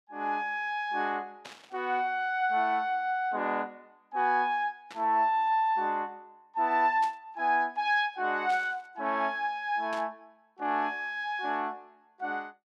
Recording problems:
static burst; 5 times, first at 1.5 s; peak -10 dB vs average level

